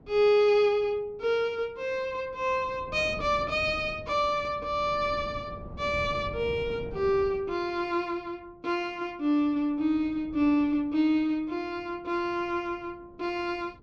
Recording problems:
wind on the microphone; below 310 Hz, SNR 18 dB

